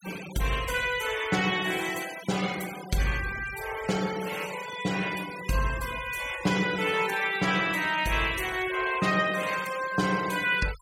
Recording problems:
noise reduction artefacts; signal-to-artefact ratio 13 dB

